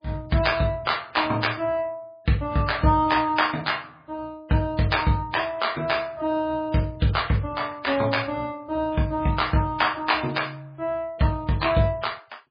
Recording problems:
lossy codec; MP3, log-spectral distance 4 dB, nothing above 5 kHz

